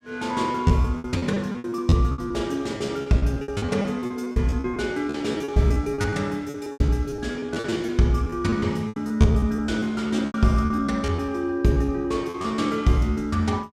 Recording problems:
lost packets; 17% of the sound replaced, filled with repeated pitch periods

